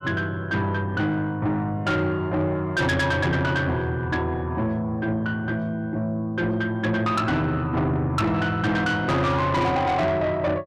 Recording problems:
distorted audio; soft clipping, signal-to-distortion ratio 8 dB

